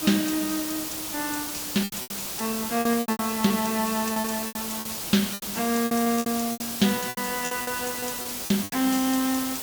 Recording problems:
hiss; SNR 3 dB
lost packets; 14% of the sound replaced, filled with repeated pitch periods

